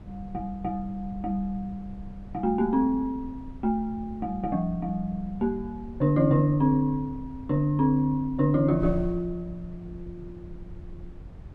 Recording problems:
wind noise; below 100 Hz, SNR 16 dB

